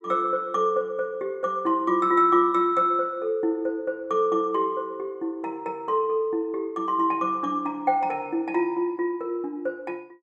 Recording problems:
none

